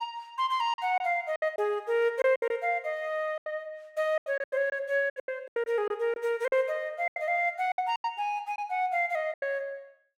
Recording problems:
packet loss; 12% of the sound replaced, filled with silence

